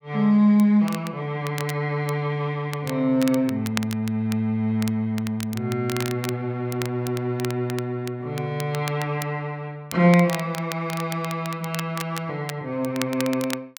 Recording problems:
crackling; vinyl, SNR 13 dB

